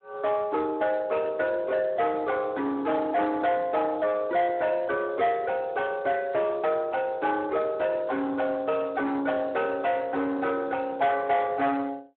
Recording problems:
phone line; 320 Hz to 3.8 kHz, Speex
distorted audio; soft clipping, signal-to-distortion ratio 11 dB

